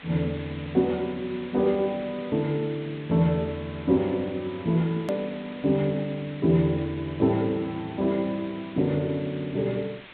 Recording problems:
treble missing; nothing above 4 kHz
hiss; SNR 18 dB
hard cut with a click; at 5 s

